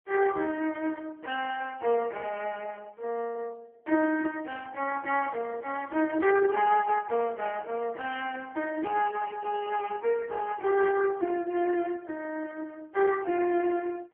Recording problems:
phone line; 280 Hz to 2.8 kHz, AMR-NB

